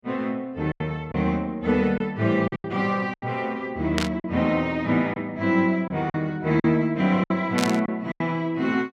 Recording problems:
lost packets; 7% of the sound replaced, filled with silence
burst of static; at 4 s and at 7.5 s; peak +2 dB vs average level

